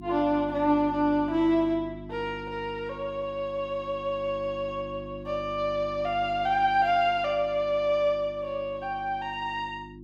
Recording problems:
electrical hum; 50 Hz, harmonics up to 350 Hz, SNR 15 dB

